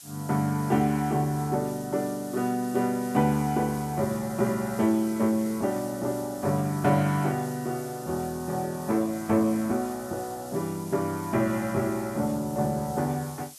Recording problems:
hiss; SNR 17 dB

